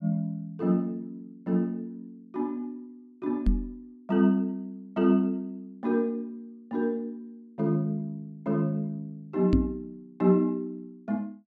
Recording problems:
microphone bump; at 3.5 s and at 9.5 s; peak +9 dB vs average level

